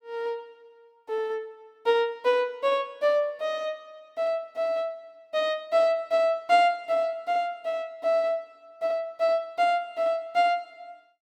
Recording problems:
none

